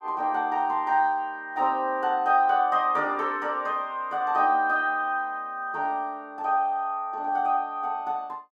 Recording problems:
none

